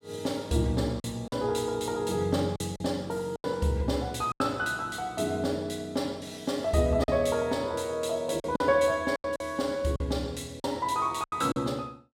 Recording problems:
lost packets; 6% of the sound replaced, filled with silence

